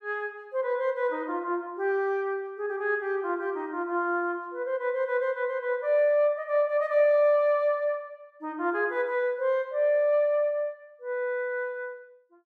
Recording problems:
none

